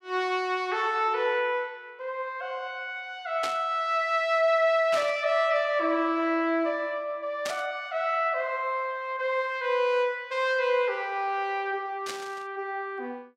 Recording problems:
static burst; 4 times, first at 3.5 s; peak -2 dB vs average level

